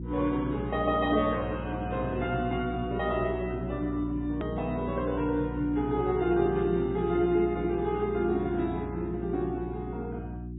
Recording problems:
low-pass filter; nothing above 3.2 kHz
codec artefacts; MP3, log-spectral distance 2 dB
electrical hum; 60 Hz, harmonics up to 360 Hz, SNR 8 dB
edit click; at 4.5 s

